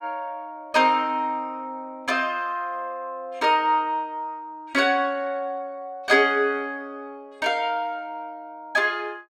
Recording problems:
none

